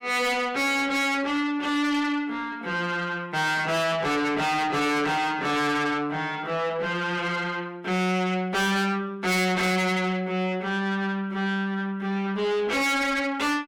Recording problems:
distorted audio; soft clipping, signal-to-distortion ratio 6 dB

